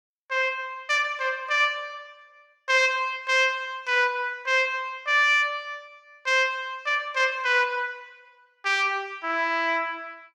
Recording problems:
none

